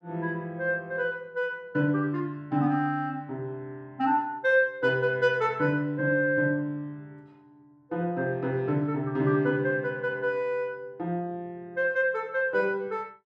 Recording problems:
none

